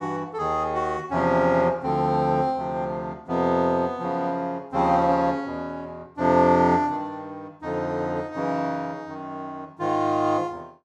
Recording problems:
none

